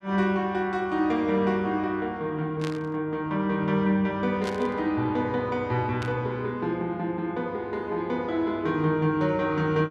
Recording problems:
burst of static; at 2.5 s, at 4.5 s and at 6 s; peak -6 dB vs average level

